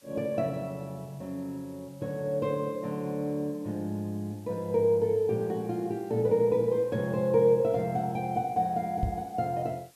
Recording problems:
hiss; slope +1 dB per octave, SNR 29 dB
knock on the microphone; at 9 s; peak +3 dB vs average level

